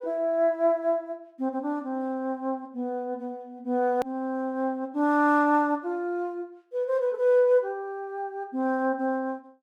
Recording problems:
hard cut with a click; at 4 s

